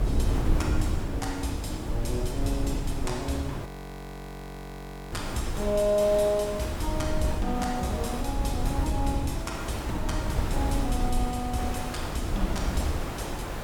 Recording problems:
electrical hum; 50 Hz, harmonics up to 350 Hz, SNR 11 dB
background hiss; slope -6 dB per octave, SNR 7 dB
rumble; below 96 Hz, SNR 2 dB
audio freezing; at 3.5 s for 1.5 s

